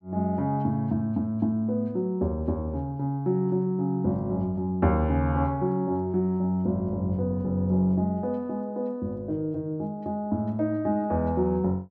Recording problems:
none

